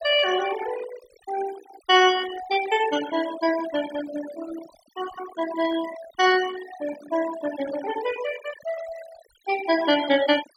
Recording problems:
denoising artefacts; signal-to-artefact ratio 12 dB

